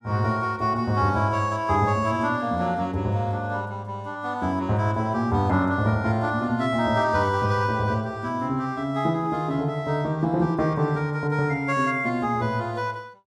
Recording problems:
none

